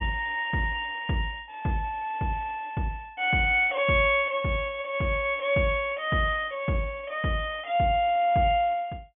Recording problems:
treble cut off; nothing above 3.4 kHz

